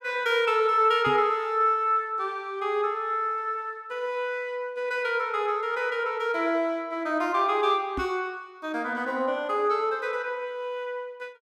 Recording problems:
knock on the microphone; at 1 s and at 8 s; peak -4 dB vs average level

